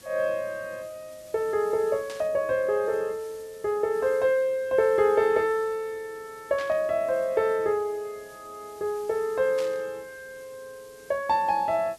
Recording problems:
hiss; SNR 25 dB
static burst; at 2 s, at 6.5 s and at 9.5 s; peak -10 dB vs average level

